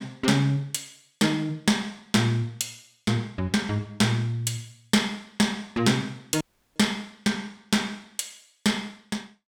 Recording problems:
audio cutting out; at 6.5 s

